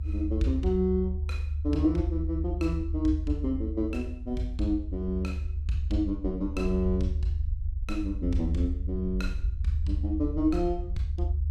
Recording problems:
rumble; below 76 Hz, strongest tone 74 Hz, SNR 2 dB

